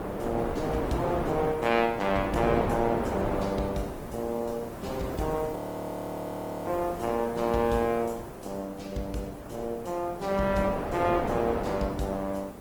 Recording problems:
lossy codec; Opus, log-spectral distance 4 dB, nothing above 20.1 kHz
hiss; SNR 18 dB
wind on the microphone; below 810 Hz, SNR 5 dB
frozen audio; at 5.5 s for 1 s

